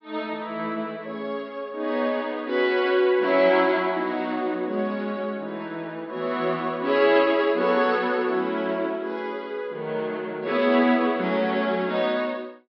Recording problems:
low-pass filter; nothing above 5.5 kHz

